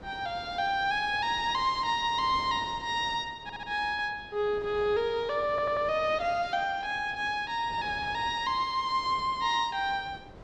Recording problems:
wind noise; below 700 Hz, SNR 19 dB
stutter; at 3.5 s and at 5.5 s

